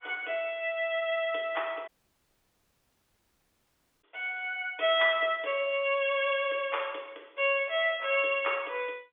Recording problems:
telephone audio; 280 Hz to 3.6 kHz, G.711
dropout; at 2 s for 2 s

